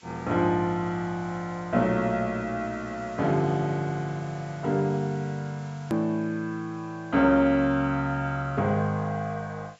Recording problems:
treble missing; nothing above 8 kHz
hiss; slope +1 dB per octave, SNR 27 dB
hard cut with a click; at 6 s

